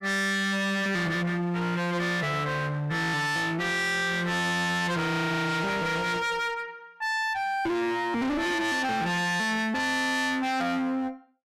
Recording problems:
distorted audio; hard clipping, uneven, signal-to-distortion ratio 5 dB

